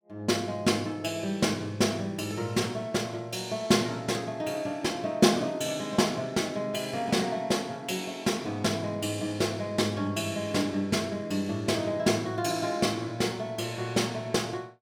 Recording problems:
none

